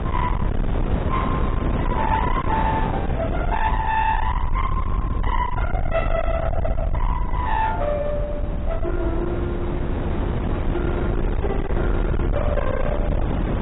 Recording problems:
codec artefacts; AAC, log-spectral distance 2 dB, nothing above 3.8 kHz
distorted audio; hard clipping, signal-to-distortion ratio 7 dB
low-frequency rumble; below 88 Hz, SNR 1 dB
wind noise; below 410 Hz, SNR 1 dB

